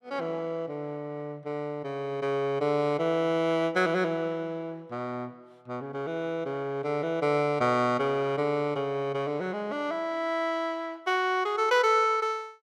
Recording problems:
none

